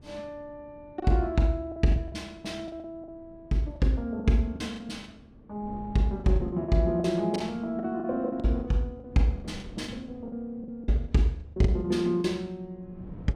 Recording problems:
wind on the microphone; below 260 Hz, SNR 22 dB
lost packets; 12% of the sound replaced, filled with the last packet

